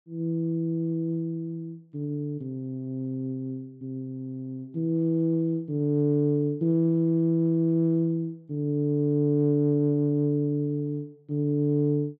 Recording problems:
none

